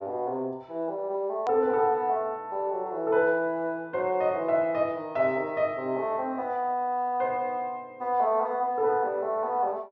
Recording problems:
treble cut off; nothing above 7.3 kHz
edit click; at 1.5 s

